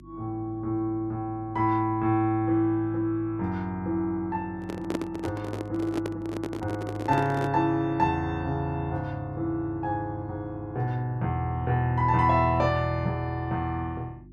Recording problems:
hum; 50 Hz, harmonics up to 350 Hz, SNR 21 dB
microphone handling noise; from 4.5 to 7.5 s; peak 0 dB vs average level

